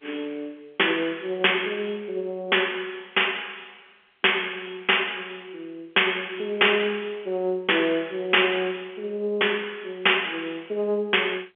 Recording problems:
phone line; 280 Hz to 3.4 kHz, G.711

